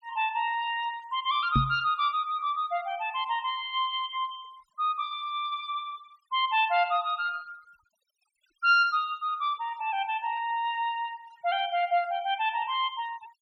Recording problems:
denoising artefacts; signal-to-artefact ratio 26 dB
knock on the microphone; at 1.5 s; peak +6 dB vs average level

